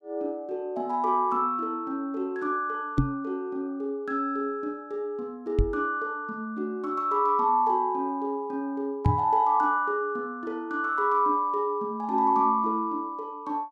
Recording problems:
microphone bump; at 3 s, at 5.5 s and at 9 s; peak +8 dB vs average level

